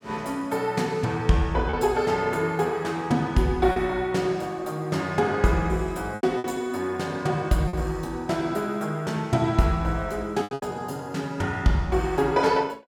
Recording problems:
lost packets; 3% of the sound replaced, filled with repeated pitch periods

